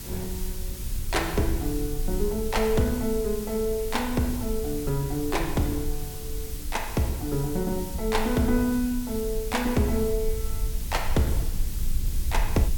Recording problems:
background hiss; SNR 11 dB
rumble; below 56 Hz, SNR 7 dB

